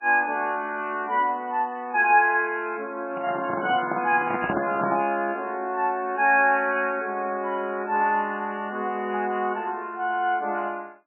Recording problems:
lossy compression; MP3, log-spectral distance 3 dB, nothing above 2.5 kHz
microphone handling noise; from 3 to 5 s; peak +2 dB vs average level

